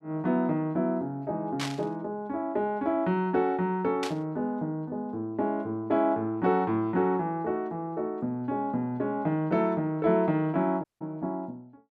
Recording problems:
burst of static; at 1.5 s and at 4 s; peak 0 dB vs average level
dropout; at 11 s

